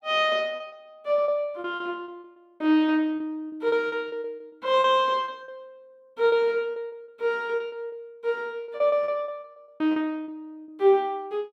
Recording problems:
packet loss; 14% of the sound replaced, filled with repeated pitch periods

